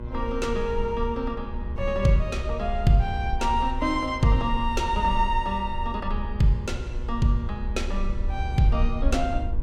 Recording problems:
electrical hum; 60 Hz, harmonics up to 1.6 kHz, SNR 16 dB
low-frequency rumble; below 66 Hz, strongest tone 28 Hz, SNR 6 dB

